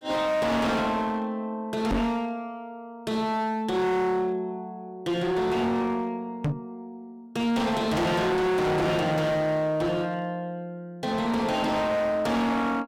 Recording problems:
distortion; hard clipping, uneven, signal-to-distortion ratio 6 dB
knock on the microphone; at 2 s and at 6.5 s; peak +3 dB vs average level

